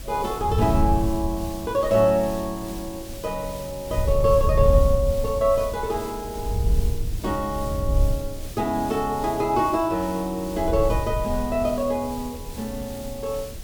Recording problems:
background hiss; SNR 15 dB
wind noise; below 84 Hz, SNR 3 dB

